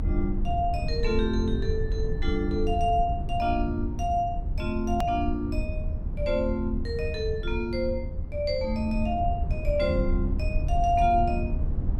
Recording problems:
rumble; below 84 Hz, SNR 3 dB
click at an edit; at 5 s

